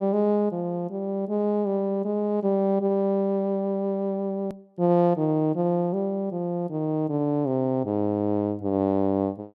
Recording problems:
hard cut with a click; at 4.5 s

